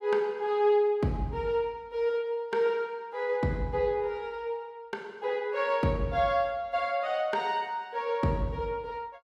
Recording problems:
none

